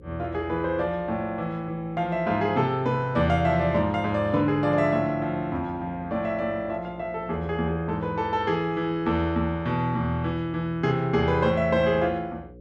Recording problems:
mains hum; 60 Hz, harmonics up to 540 Hz, SNR 24 dB

